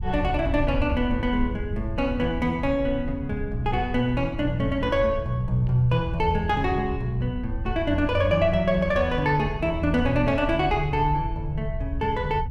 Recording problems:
low-frequency rumble; below 88 Hz, SNR 8 dB

